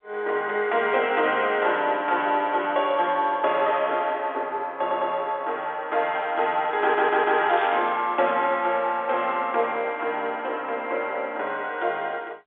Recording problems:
telephone audio; 320 Hz to 3.6 kHz, G.711
audio stuttering; at 5 s and at 7 s
static burst; at 7.5 s; peak -8 dB vs average level

